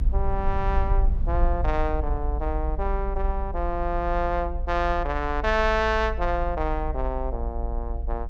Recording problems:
rumble; below 56 Hz, strongest tone 32 Hz, SNR 2 dB

